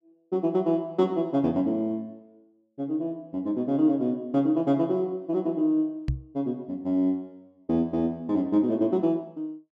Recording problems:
microphone bump; at 6 s; peak +2 dB vs average level

